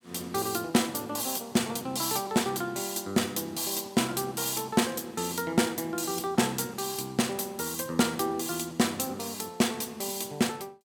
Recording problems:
none

